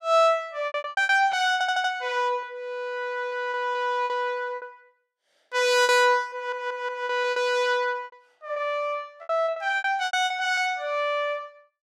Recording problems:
lost packets; 12% of the sound replaced, filled with repeated pitch periods
audio stuttering; at 1.5 s and at 6.5 s

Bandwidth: 16 kHz